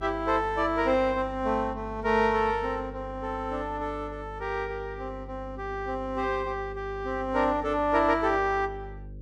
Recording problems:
electrical hum; 50 Hz, harmonics up to 550 Hz, SNR 15 dB

